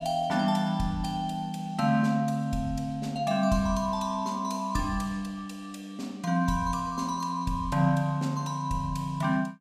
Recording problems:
none

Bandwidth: 15.5 kHz